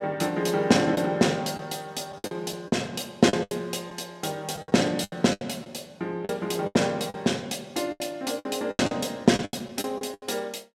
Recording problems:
packet loss; 12% of the sound replaced, filled with the last packet

